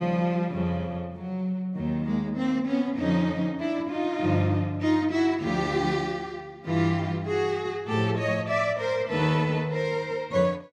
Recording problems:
none

